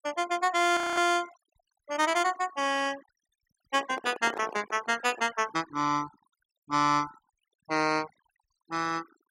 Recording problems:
noise reduction artefacts; signal-to-artefact ratio 18 dB
frozen audio; at 1 s
microphone handling noise; from 3.5 to 5.5 s; peak -4 dB vs average level

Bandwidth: 16.5 kHz